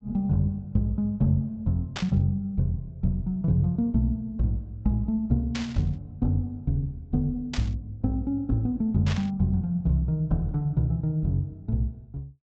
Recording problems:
treble missing; nothing above 8 kHz
static burst; 4 times, first at 2 s; peak -2 dB vs average level

